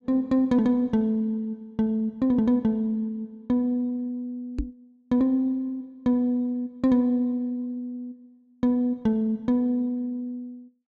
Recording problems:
microphone bump; at 4.5 s; peak 0 dB vs average level

